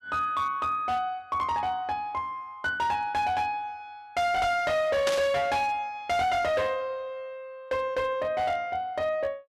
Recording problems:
distortion; hard clipping, signal-to-distortion ratio 11 dB
burst of static; at 5 s; peak +2 dB vs average level

